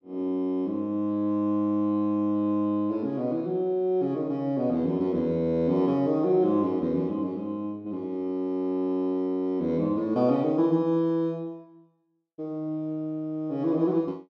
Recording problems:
none

